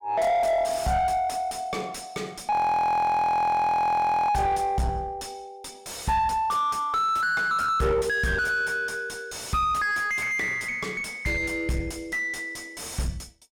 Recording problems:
distorted audio; soft clipping, signal-to-distortion ratio 5 dB
frozen audio; at 2.5 s for 2 s

